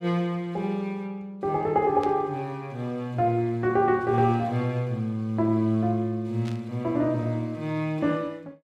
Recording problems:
static burst; at 2 s and at 6.5 s; peak -12 dB vs average level

